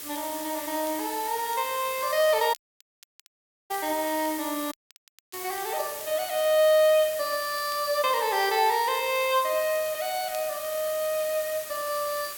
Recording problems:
background hiss; slope 0 dB per octave, SNR 10 dB
crackle; vinyl, SNR 28 dB
audio cutting out; at 2.5 s for 1 s and at 4.5 s for 0.5 s

